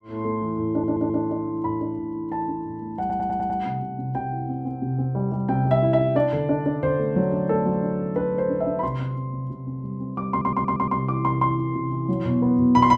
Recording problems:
stutter; at 0.5 s, at 3 s and at 10 s

